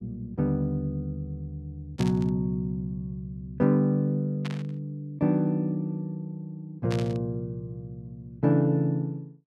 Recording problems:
burst of static; at 2 s, at 4.5 s and at 7 s; peak -5 dB vs average level

